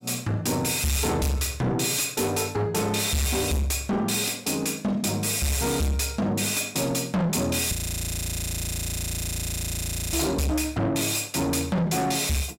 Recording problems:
distortion; soft clipping, signal-to-distortion ratio 7 dB
frozen audio; at 7.5 s for 2.5 s

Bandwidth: 16 kHz